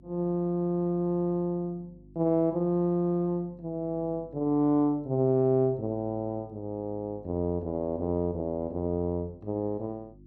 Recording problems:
electrical hum; 50 Hz, harmonics up to 350 Hz, SNR 25 dB

